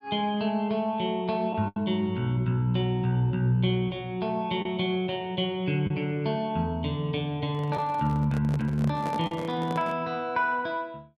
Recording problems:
packet loss; 1.8% of the sound replaced, filled with the last packet
handling noise; from 7.5 to 10 s; peak -5 dB vs average level

